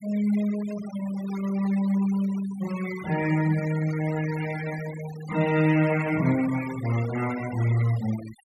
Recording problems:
noise reduction artefacts; signal-to-artefact ratio 16 dB

